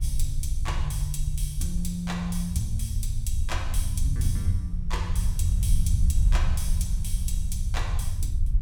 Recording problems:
low-frequency rumble; below 72 Hz, SNR -4 dB
wind on the microphone; below 1.4 kHz, SNR 26 dB

